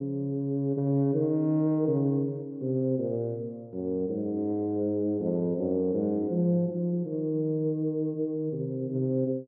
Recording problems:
none

